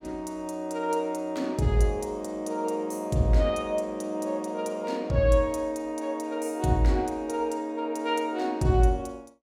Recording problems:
none

